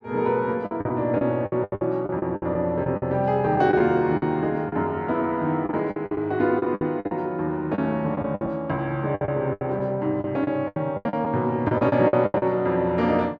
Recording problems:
lost packets; 14% of the sound replaced, filled with the last packet

